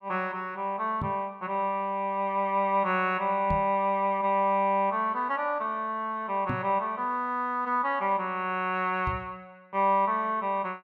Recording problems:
microphone bump; 4 times, first at 1 s; peak -1 dB vs average level

